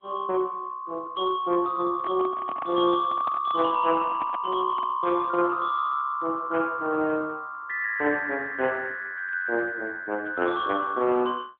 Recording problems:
telephone audio; 260 Hz to 3.4 kHz, AMR-NB
handling noise; from 2 to 5 s; peak -5 dB vs average level

